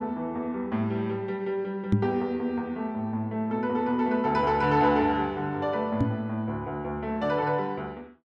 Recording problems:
knock on the microphone; at 2 s and at 6 s; peak +8 dB vs average level

